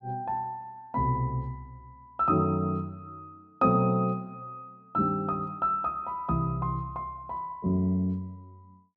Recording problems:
none

